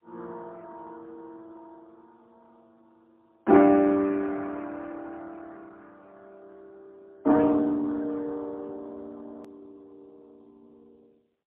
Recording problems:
phone line; 240 Hz to 2.1 kHz, AMR-NB, then MP3
hard cut with a click; at 9.5 s

